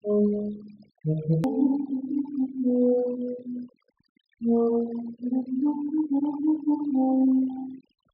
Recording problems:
low-pass filter; nothing above 5.5 kHz
denoising artefacts; signal-to-artefact ratio 19 dB
hard cut with a click; at 1.5 s

